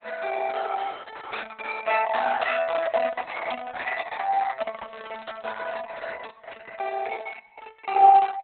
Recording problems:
lossy codec; Opus, log-spectral distance 5 dB, nothing above 4 kHz

